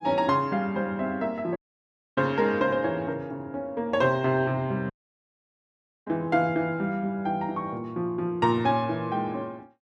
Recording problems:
audio cutting out; at 1.5 s for 0.5 s and at 5 s for 1 s

